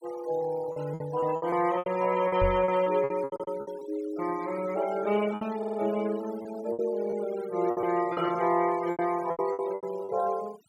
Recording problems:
denoising artefacts; signal-to-artefact ratio 18 dB
lost packets; 12% of the sound replaced, filled with repeated pitch periods
microphone bump; at 2.5 s; peak +1 dB vs average level
stutter; at 3.5 s and at 5.5 s

